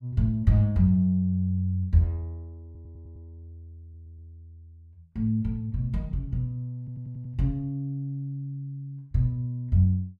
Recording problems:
audio stuttering; at 2.5 s, at 4 s and at 7 s

